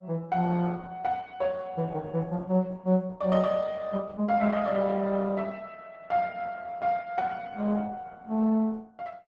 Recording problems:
lossy compression; Opus, log-spectral distance 3 dB

